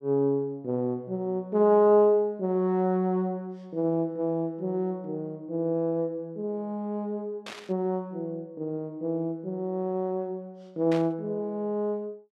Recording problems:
static burst; at 7.5 s and at 11 s; peak -7 dB vs average level

